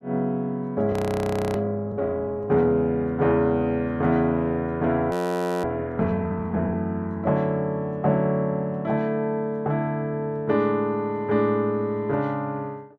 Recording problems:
audio freezing; at 1 s for 0.5 s and at 5 s for 0.5 s

